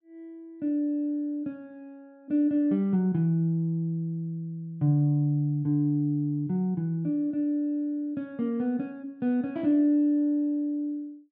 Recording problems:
none

